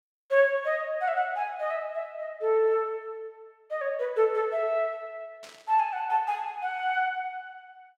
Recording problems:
static burst; at 5.5 s; peak -15 dB vs average level

